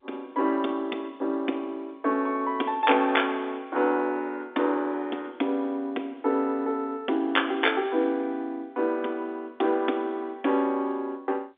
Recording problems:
phone line; 240 Hz to 3.6 kHz, G.711

